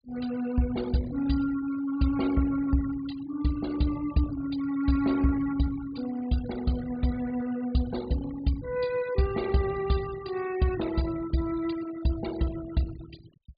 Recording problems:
low-pass filter; nothing above 4.8 kHz
denoising artefacts; signal-to-artefact ratio 16 dB

